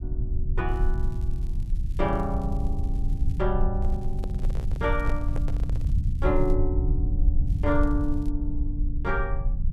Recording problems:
low-frequency rumble; below 70 Hz, SNR -2 dB
crackle; from 0.5 to 3.5 s, from 4 to 6.5 s and at 7.5 s; loose cable, SNR 28 dB
microphone handling noise; from 3.5 to 6 s; peak -3 dB vs average level

